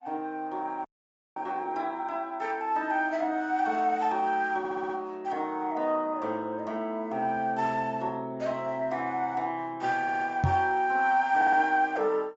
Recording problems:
low-pass filter; nothing above 7.6 kHz
codec artefacts; Opus, log-spectral distance 2 dB
audio freezing; at 1 s for 0.5 s
audio stuttering; at 4.5 s, at 10 s and at 11 s
knock on the microphone; at 10 s; peak +6 dB vs average level

